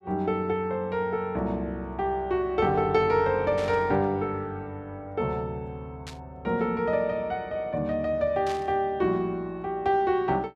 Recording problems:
static burst; at 3.5 s, at 6 s and at 8.5 s; peak -9 dB vs average level

